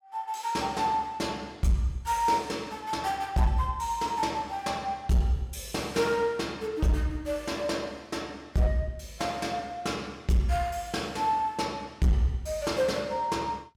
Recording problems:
distorted audio; hard clipping, signal-to-distortion ratio 11 dB

